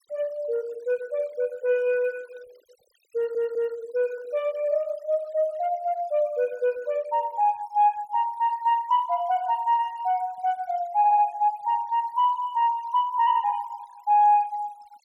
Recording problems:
noise reduction artefacts; signal-to-artefact ratio 28 dB
audio stuttering; at 3 s and at 11 s

